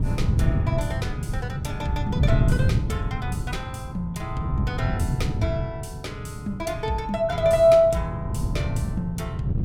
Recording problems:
wind noise; below 150 Hz, SNR 1 dB

